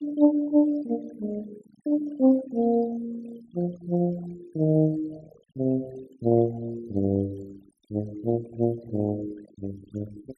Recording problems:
denoising artefacts; signal-to-artefact ratio 21 dB

